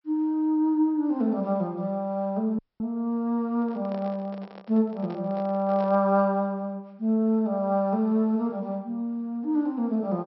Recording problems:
low-pass filter; nothing above 5.5 kHz
dropout; at 2.5 s
handling noise; from 3.5 to 6 s; peak -11 dB vs average level

